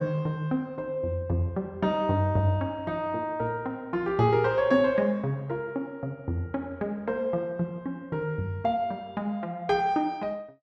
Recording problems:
none

